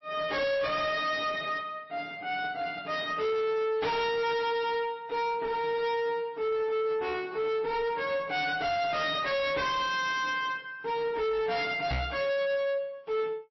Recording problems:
lossy compression; MP3, log-spectral distance 2 dB, nothing above 5.7 kHz
distorted audio; soft clipping, signal-to-distortion ratio 7 dB
microphone bump; at 12 s; peak +2 dB vs average level

